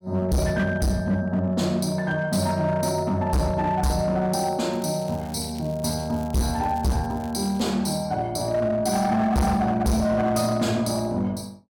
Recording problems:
distorted audio; hard clipping, signal-to-distortion ratio 7 dB
crackling; from 4.5 to 7.5 s; loose cable, SNR 25 dB

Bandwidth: 17.5 kHz